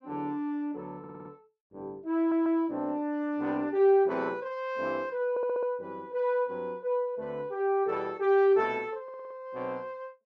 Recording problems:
audio stuttering; 4 times, first at 1 s

